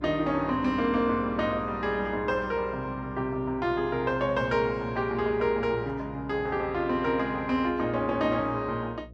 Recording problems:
hum; 60 Hz, harmonics up to 660 Hz, SNR 18 dB

